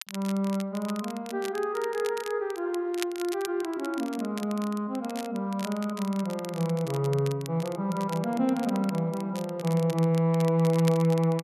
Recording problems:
crackling; vinyl, SNR 16 dB

